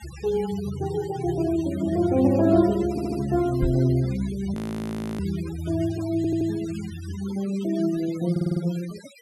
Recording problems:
noise reduction artefacts; signal-to-artefact ratio 17 dB
audio stuttering; at 3 s, at 6 s and at 8.5 s
knock on the microphone; at 3.5 s; peak +7 dB vs average level
frozen audio; at 4.5 s for 0.5 s

